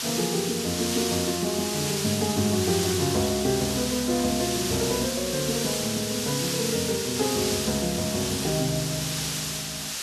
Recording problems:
background hiss; slope +2 dB per octave, SNR 1 dB

